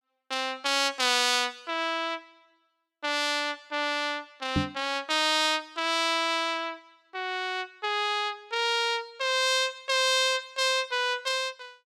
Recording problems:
knock on the microphone; at 4.5 s; peak +3 dB vs average level

